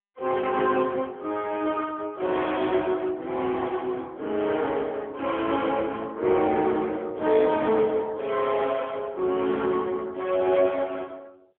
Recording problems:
phone line; 240 Hz to 3.4 kHz, AMR-NB

